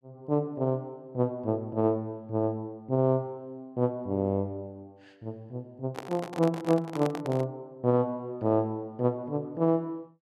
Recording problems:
microphone handling noise; from 6 to 7.5 s; peak -2 dB vs average level

